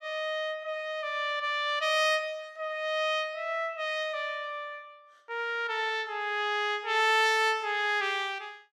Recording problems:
none

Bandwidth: 16.5 kHz